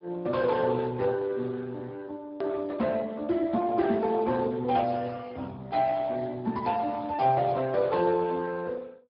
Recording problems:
treble missing; nothing above 5.2 kHz
codec artefacts; Speex, log-spectral distance 3 dB
edit click; at 2.5 s

